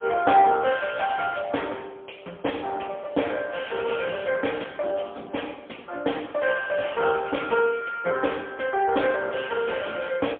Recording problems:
telephone audio; 300 Hz to 3.4 kHz, AMR-NB, then MP3

